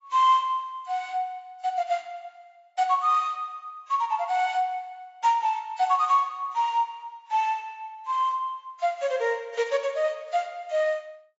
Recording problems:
lossy compression; AAC, log-spectral distance 2 dB, nothing above 7.3 kHz

